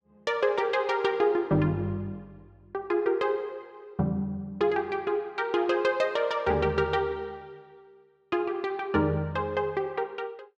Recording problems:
none

